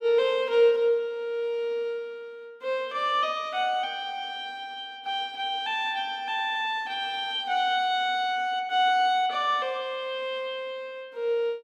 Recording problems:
none

